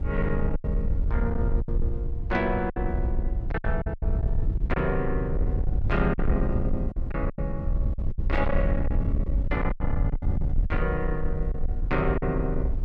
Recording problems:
distorted audio; soft clipping, signal-to-distortion ratio 11 dB
low-frequency rumble; below 74 Hz, SNR -1 dB
wind on the microphone; below 260 Hz, SNR 17 dB
lost packets; 9% of the sound replaced, filled with silence

